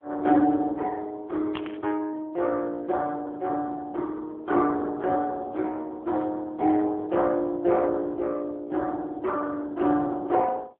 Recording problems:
phone line; 240 Hz to 2.3 kHz, AMR-NB
burst of static; at 1.5 s; peak -7 dB vs average level

